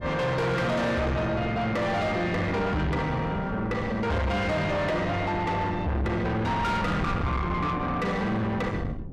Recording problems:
distorted audio; soft clipping, signal-to-distortion ratio 6 dB
wind on the microphone; below 420 Hz, SNR 9 dB

